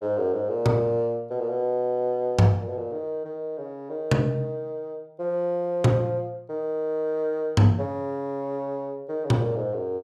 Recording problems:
none

